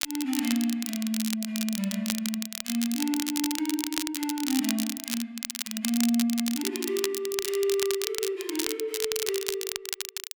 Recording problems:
crackling; vinyl, SNR 3 dB

